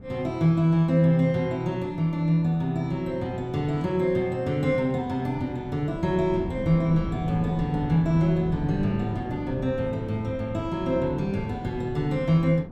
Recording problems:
wind noise; below 260 Hz, SNR 12 dB

